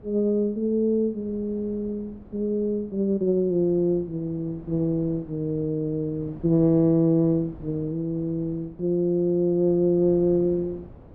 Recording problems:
wind noise; below 360 Hz, SNR 22 dB

